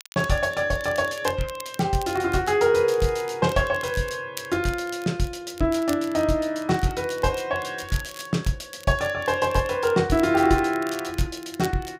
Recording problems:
crackle; vinyl, SNR 19 dB

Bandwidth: 15.5 kHz